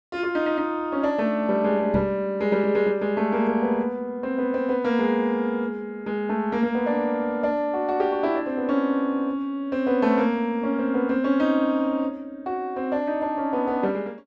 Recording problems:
knock on the microphone; at 2 s; peak -2 dB vs average level

